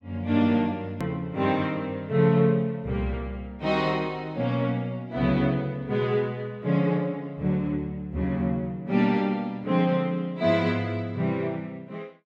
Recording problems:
hard cut with a click; at 1 s

